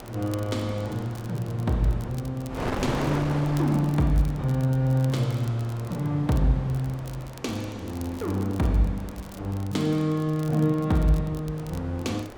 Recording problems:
wind noise; below 1 kHz, SNR 11 dB
crackling; vinyl, SNR 23 dB

